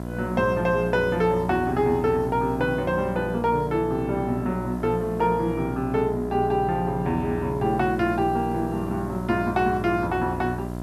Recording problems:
hum; 60 Hz, harmonics up to 1.4 kHz, SNR 8 dB
hiss; slope 0 dB per octave, SNR 30 dB

